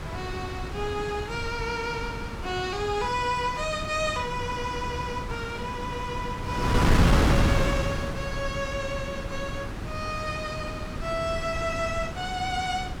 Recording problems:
wind noise; below 450 Hz, SNR 0 dB

